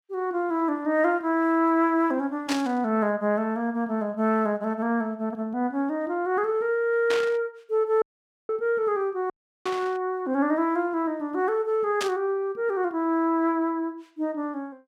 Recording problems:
burst of static; 4 times, first at 2.5 s; peak 0 dB vs average level
dropout; at 8 s and at 9.5 s

